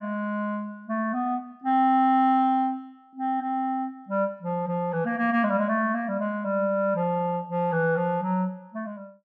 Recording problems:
none

